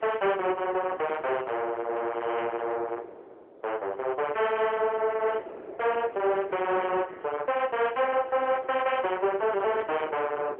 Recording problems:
phone line; 320 Hz to 3.2 kHz, AMR-NB
wind noise; below 620 Hz, SNR 17 dB

